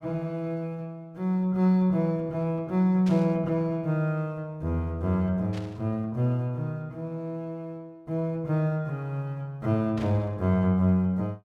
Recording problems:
burst of static; at 3 s, at 5.5 s and at 10 s; peak -12 dB vs average level

